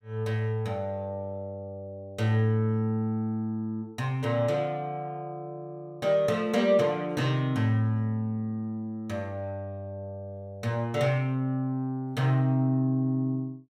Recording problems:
none

